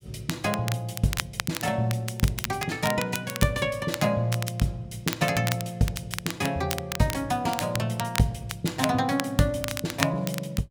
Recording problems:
crackle; vinyl, SNR 7 dB

